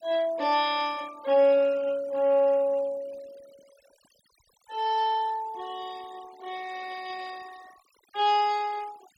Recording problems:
noise reduction artefacts; signal-to-artefact ratio 24 dB

